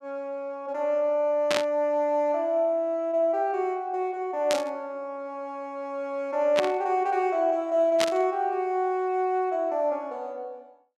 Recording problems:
static burst; 4 times, first at 1.5 s; peak +3 dB vs average level

